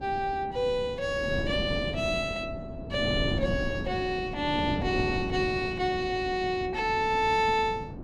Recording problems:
wind noise; below 320 Hz, SNR 7 dB

